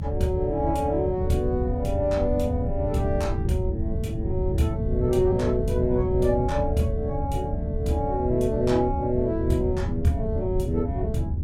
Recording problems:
rumble; below 80 Hz, strongest tone 78 Hz, SNR 8 dB
wind noise; below 140 Hz, SNR 5 dB

